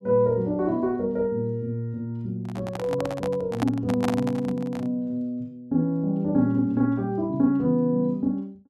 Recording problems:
microphone handling noise; from 2.5 to 5 s; peak 0 dB vs average level

